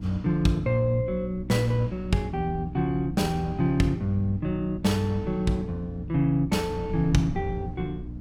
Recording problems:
electrical hum; 60 Hz, harmonics up to 300 Hz, SNR 12 dB
wind on the microphone; below 130 Hz, SNR 17 dB

